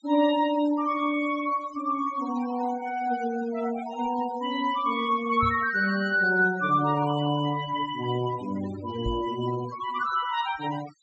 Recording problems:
treble cut off; nothing above 8 kHz
denoising artefacts; signal-to-artefact ratio 16 dB
knock on the microphone; at 5.5 s and at 9 s; peak -3 dB vs average level

